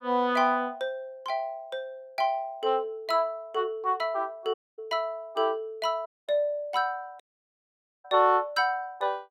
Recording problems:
dropout; at 4.5 s, at 6 s and at 7 s for 1 s

